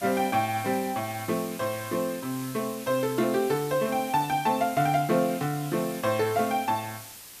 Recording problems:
background hiss; slope +1 dB per octave, SNR 14 dB

